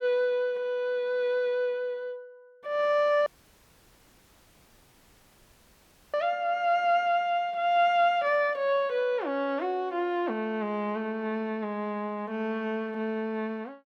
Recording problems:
audio cutting out; at 3.5 s for 3 s

